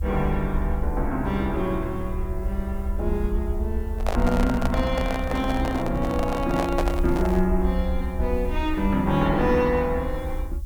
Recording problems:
background hiss; SNR 28 dB
rumble; below 68 Hz, SNR 5 dB
microphone handling noise; from 4 to 7.5 s; peak +3 dB vs average level

